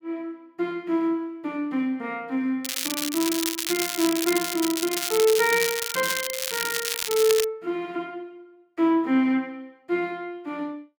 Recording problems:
crackling; from 2.5 to 7.5 s; loose cable, SNR 2 dB

